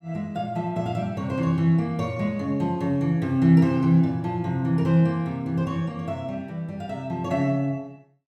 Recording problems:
none

